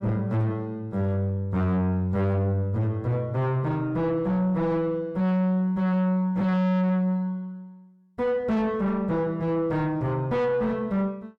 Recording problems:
distorted audio; soft clipping, signal-to-distortion ratio 6 dB

